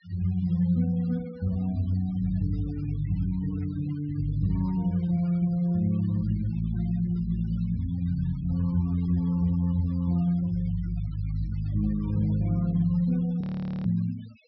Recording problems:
low-pass filter; nothing above 5.5 kHz
noise reduction artefacts; signal-to-artefact ratio 25 dB
audio freezing; at 13 s

